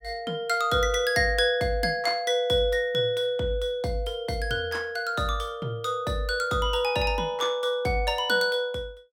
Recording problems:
none

